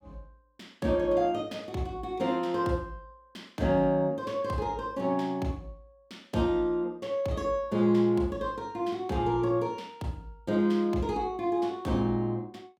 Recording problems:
none

